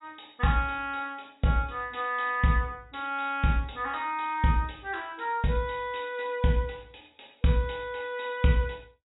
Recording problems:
treble missing; nothing above 4 kHz

